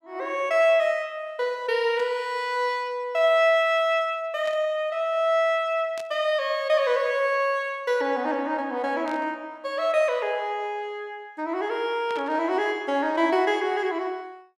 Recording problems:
static burst; 5 times, first at 2 s; peak -12 dB vs average level

